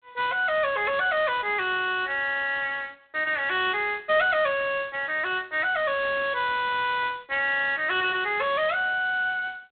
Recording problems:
phone line; 320 Hz to 3.7 kHz, G.726

